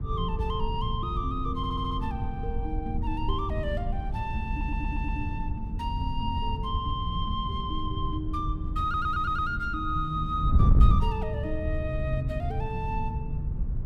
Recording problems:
wind on the microphone; below 94 Hz, SNR -1 dB
stutter; at 1.5 s, at 4.5 s and at 9 s

